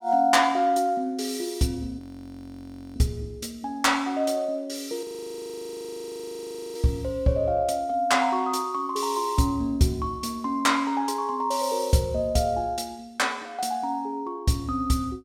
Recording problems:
audio freezing; at 2 s for 1 s and at 5 s for 1.5 s

